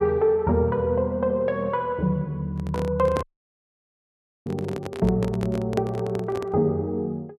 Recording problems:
handling noise; from 2.5 to 6.5 s; peak -1 dB vs average level
dropout; at 3 s for 1 s

